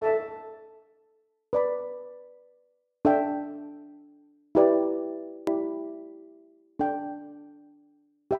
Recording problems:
hard cut with a click; at 5.5 s

